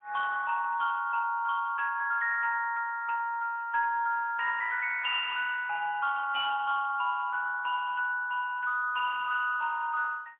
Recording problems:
phone line; 340 Hz to 3.1 kHz, AMR-NB, then MP3

